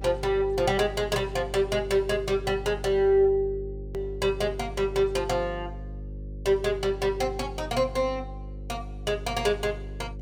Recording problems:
mains hum; 50 Hz, harmonics up to 550 Hz, SNR 12 dB
edit click; at 4 s

